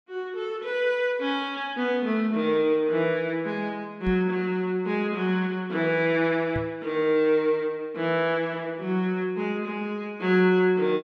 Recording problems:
knock on the microphone; at 4 s and at 6.5 s; peak -3 dB vs average level

